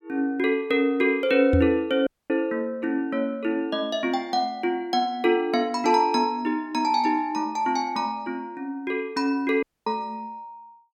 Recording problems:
knock on the microphone; at 1.5 s; peak +7 dB vs average level
audio cutting out; at 2 s and at 9.5 s

